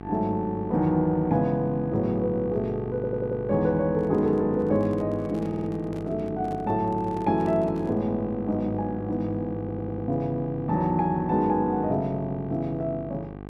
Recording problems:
electrical hum; 50 Hz, harmonics up to 1.6 kHz, SNR 13 dB
stutter; at 3 s, at 5.5 s and at 9.5 s
microphone handling noise; from 4 to 8 s; peak -12 dB vs average level

